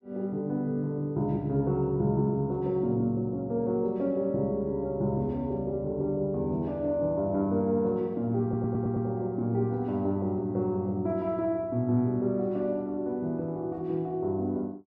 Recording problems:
audio stuttering; at 8.5 s

